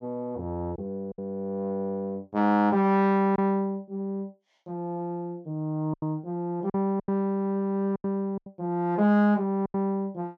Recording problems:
packet loss; 6% of the sound replaced, filled with silence

